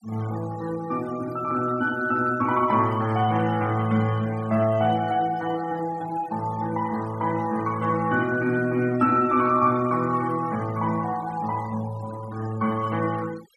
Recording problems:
denoising artefacts; signal-to-artefact ratio 19 dB

